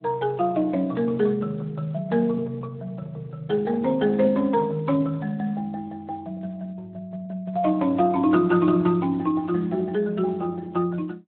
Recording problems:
phone line; 190 Hz to 2.7 kHz, Speex

